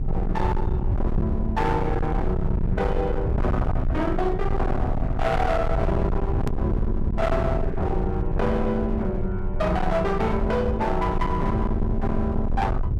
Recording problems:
distorted audio; hard clipping, signal-to-distortion ratio 7 dB
hum; 50 Hz, harmonics up to 450 Hz, SNR 21 dB
low-frequency rumble; below 130 Hz, SNR 2 dB
edit click; at 6.5 s

